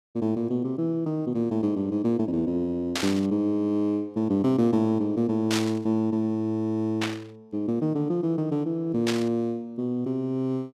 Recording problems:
static burst; 4 times, first at 3 s; peak +2 dB vs average level

